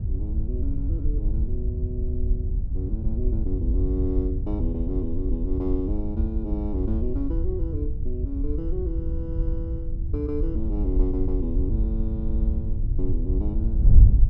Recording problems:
wind noise; below 70 Hz, SNR -6 dB

